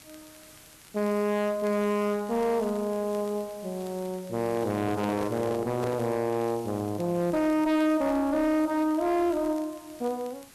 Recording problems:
distorted audio; hard clipping, uneven, signal-to-distortion ratio 11 dB
hiss; slope -1 dB per octave, SNR 22 dB
crackle; vinyl, SNR 29 dB
handling noise; from 4.5 to 6 s; peak -3 dB vs average level

